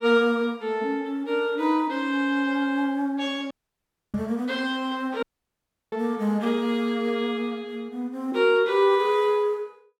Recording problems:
dropout; at 3.5 s for 0.5 s and at 5 s for 0.5 s
microphone bump; at 4 s; peak -11 dB vs average level

